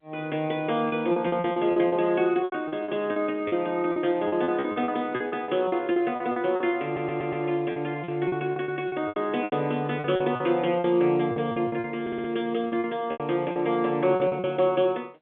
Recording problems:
telephone audio; 190 Hz to 3.7 kHz, G.711
lost packets; 15% of the sound replaced, filled with repeated pitch periods
audio stuttering; at 7 s and at 12 s

